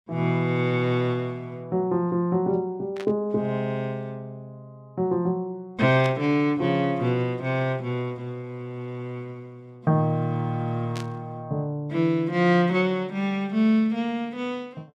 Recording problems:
static burst; at 3 s, at 6 s and at 11 s; peak -8 dB vs average level

